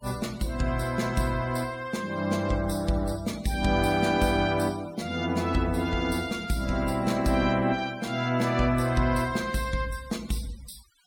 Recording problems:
noise reduction artefacts; signal-to-artefact ratio 20 dB

